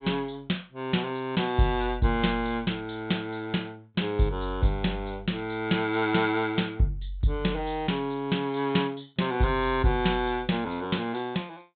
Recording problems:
treble cut off; nothing above 4 kHz

